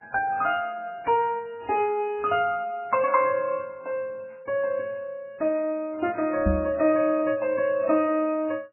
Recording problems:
lossy codec; MP3, log-spectral distance 2 dB, nothing above 2.5 kHz
knock on the microphone; at 6.5 s; peak +4 dB vs average level

